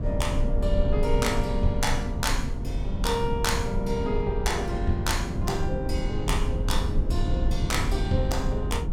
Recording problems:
rumble; below 88 Hz, SNR 1 dB

